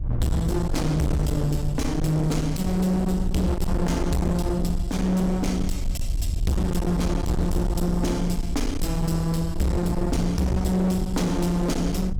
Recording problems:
distortion; hard clipping, signal-to-distortion ratio 7 dB
low-frequency rumble; below 84 Hz, SNR 6 dB
wind noise; below 110 Hz, SNR 11 dB

